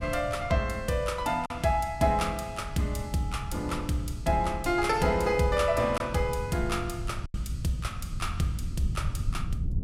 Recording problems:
wind on the microphone; below 110 Hz, SNR 9 dB
packet loss; 1.5% of the sound replaced, filled with silence

